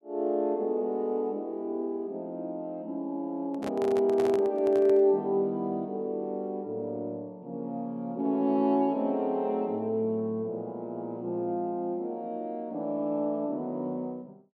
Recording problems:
microphone handling noise; from 3.5 to 5 s; peak -4 dB vs average level

